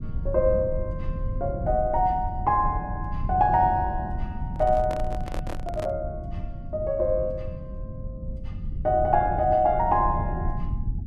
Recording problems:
rumble; below 110 Hz, SNR 8 dB
handling noise; from 4.5 to 6 s; peak -6 dB vs average level

